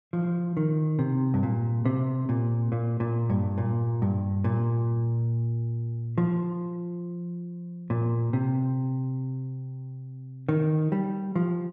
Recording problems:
none

